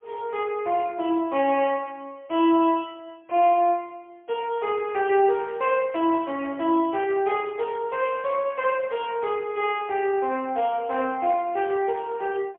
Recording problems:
phone line; 280 Hz to 3.5 kHz, AMR-NB, then MP3

